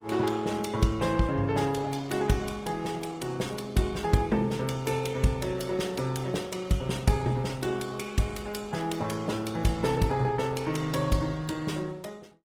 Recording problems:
codec artefacts; Opus, log-spectral distance 4 dB

